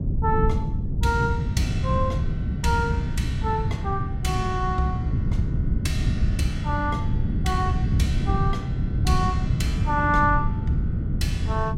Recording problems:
rumble; below 150 Hz, SNR -1 dB

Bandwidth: 16 kHz